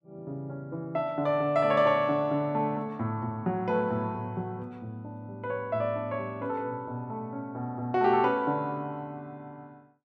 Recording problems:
none

